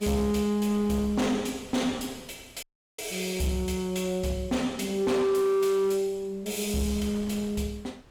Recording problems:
distorted audio; hard clipping, signal-to-distortion ratio 12 dB
wind noise; below 1.1 kHz, SNR 23 dB
dropout; at 2.5 s

